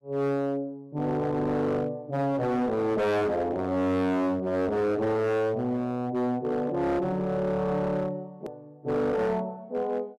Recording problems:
distortion; hard clipping, signal-to-distortion ratio 8 dB
click at an edit; at 8.5 s

